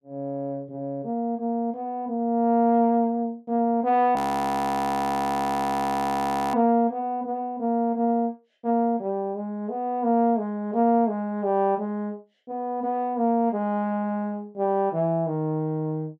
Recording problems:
audio freezing; at 4 s for 2.5 s

